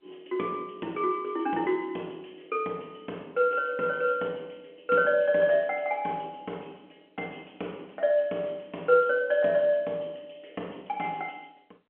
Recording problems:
telephone audio; 220 Hz to 3.5 kHz, G.711

